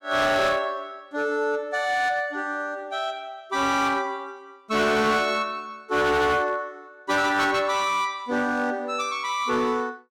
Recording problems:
distorted audio; hard clipping, signal-to-distortion ratio 10 dB

